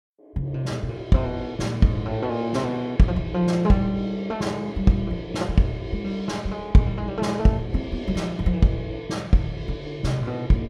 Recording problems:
none

